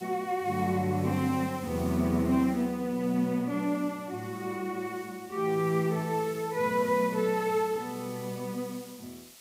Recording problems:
hiss; slope +1 dB per octave, SNR 19 dB

